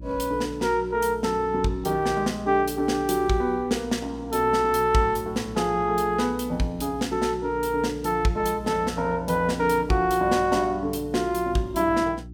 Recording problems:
mains hum; 60 Hz, harmonics up to 360 Hz, SNR 17 dB

